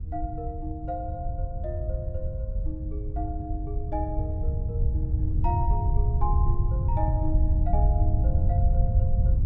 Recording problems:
wind noise; below 90 Hz, SNR -8 dB

